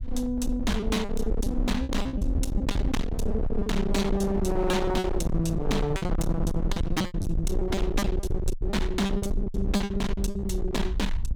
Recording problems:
distorted audio; hard clipping, signal-to-distortion ratio 7 dB
rumble; below 140 Hz, SNR 3 dB
lost packets; 16% of the sound replaced, filled with repeated pitch periods

